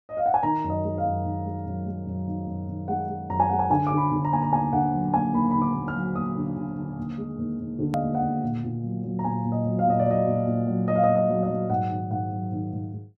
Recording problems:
edit click; at 8 s

